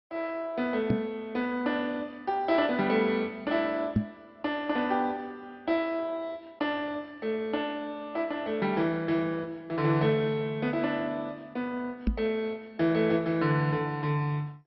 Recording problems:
lossy codec; MP2, log-spectral distance 2 dB, nothing above 4.8 kHz
knock on the microphone; at 1 s, at 4 s and at 12 s; peak +7 dB vs average level

